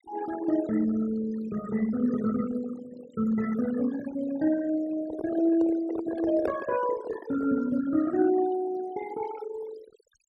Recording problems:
denoising artefacts; signal-to-artefact ratio 14 dB
handling noise; from 5 to 7.5 s; peak +2 dB vs average level

